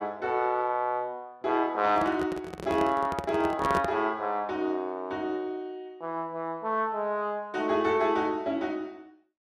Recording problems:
handling noise; from 2 to 4 s; peak +1 dB vs average level

